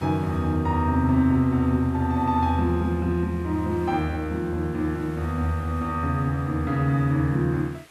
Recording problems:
background hiss; SNR 27 dB

